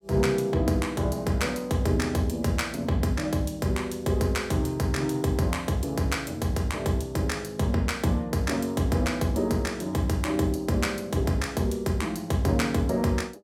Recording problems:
none

